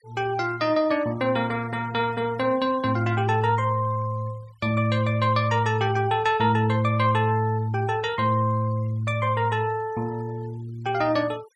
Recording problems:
denoising artefacts; signal-to-artefact ratio 26 dB

